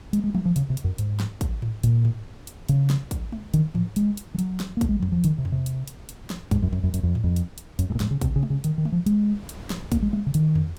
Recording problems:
wind on the microphone; below 320 Hz, SNR 21 dB

